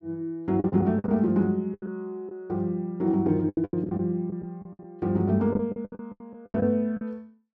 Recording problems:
packet loss; 14% of the sound replaced, filled with the last packet

